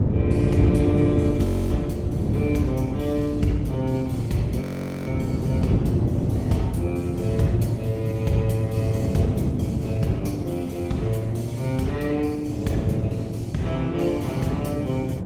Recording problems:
lossy codec; Opus, log-spectral distance 2 dB
wind noise; below 250 Hz, SNR -1 dB
audio freezing; at 1.5 s and at 4.5 s

